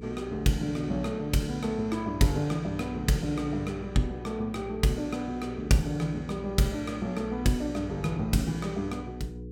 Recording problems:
electrical hum; 60 Hz, harmonics up to 480 Hz, SNR 12 dB

